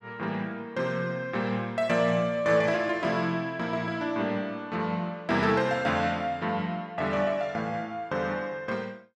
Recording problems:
none

